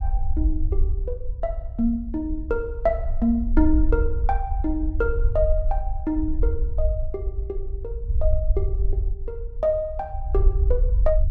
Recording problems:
rumble; below 58 Hz, SNR 0 dB

